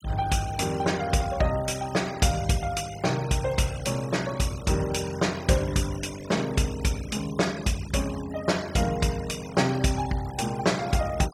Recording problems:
noise reduction artefacts; signal-to-artefact ratio 16 dB

